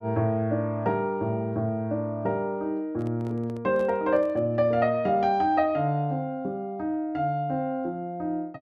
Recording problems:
handling noise; from 3 to 4.5 s; peak -11 dB vs average level

